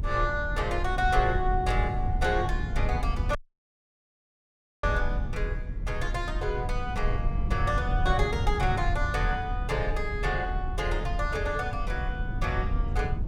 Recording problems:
low-frequency rumble; below 84 Hz, SNR 1 dB
audio cutting out; at 3.5 s for 1.5 s

